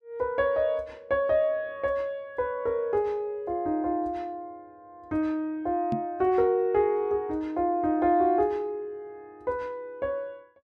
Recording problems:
microphone bump; at 6 s; peak +1 dB vs average level

